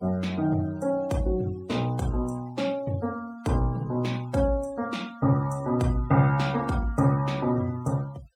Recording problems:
denoising artefacts; signal-to-artefact ratio 23 dB

